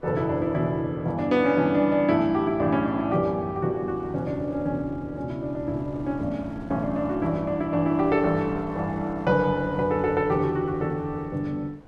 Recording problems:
wind on the microphone; below 510 Hz, SNR 21 dB

